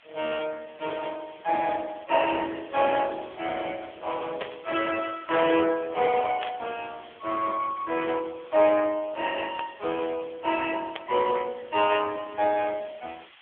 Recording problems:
phone line; 300 Hz to 3.4 kHz, AMR-NB
background hiss; SNR 25 dB
static burst; 4 times, first at 4.5 s; peak -3 dB vs average level

